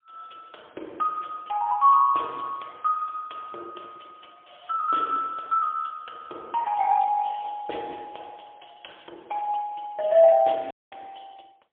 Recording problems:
telephone audio; 300 Hz to 3.4 kHz, AMR-NB, then MP3
audio cutting out; at 11 s

